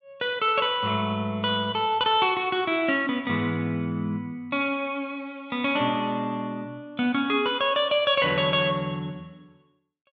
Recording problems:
none

